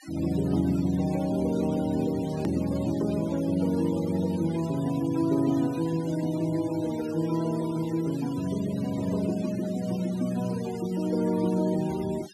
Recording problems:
denoising artefacts; signal-to-artefact ratio 18 dB
click at an edit; at 2.5 s

